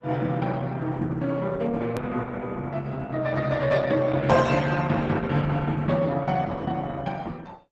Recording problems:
lossy codec; Opus, log-spectral distance 3 dB, nothing above 13.1 kHz
edit click; at 2 s

